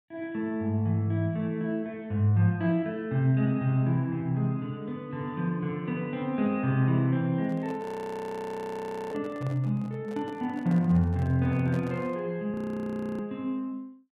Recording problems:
microphone handling noise; from 7.5 to 12 s; peak -10 dB vs average level
audio freezing; at 8 s for 1.5 s and at 13 s for 0.5 s

